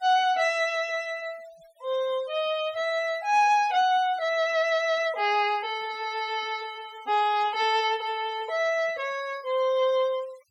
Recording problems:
noise reduction artefacts; signal-to-artefact ratio 22 dB

